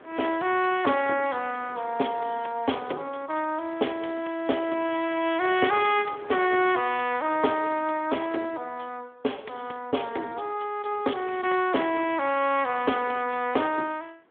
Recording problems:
phone line; 260 Hz to 3.4 kHz, Speex
wind noise; below 1.3 kHz, SNR 24 dB

